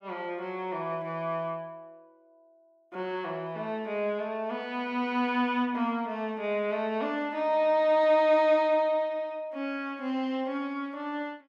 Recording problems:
none

